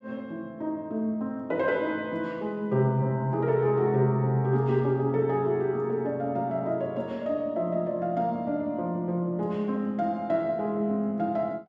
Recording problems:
none

